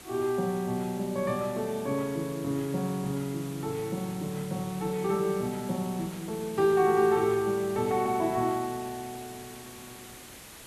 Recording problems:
hiss; slope -2 dB per octave, SNR 16 dB

